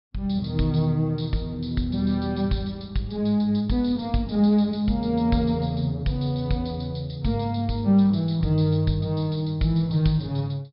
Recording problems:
low-pass filter; nothing above 5.5 kHz

